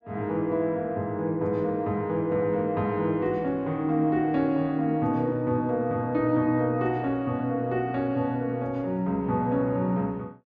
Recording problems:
none

